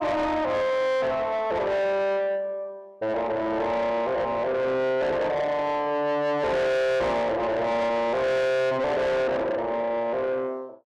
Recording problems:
distortion; soft clipping, signal-to-distortion ratio 7 dB

